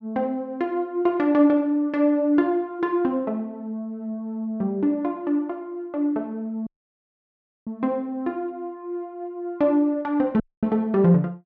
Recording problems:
audio cutting out; at 6.5 s for 1 s and at 10 s

